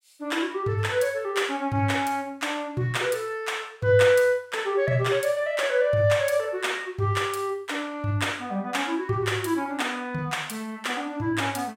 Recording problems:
none

